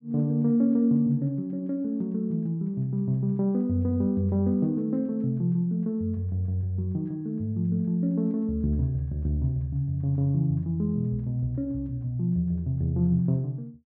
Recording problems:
none

